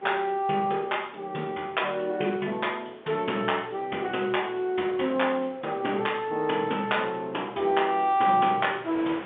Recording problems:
phone line; 190 Hz to 3.6 kHz, G.711
wind on the microphone; below 1.9 kHz, SNR 23 dB

